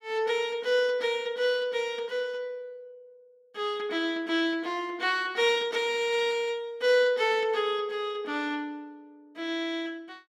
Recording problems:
none

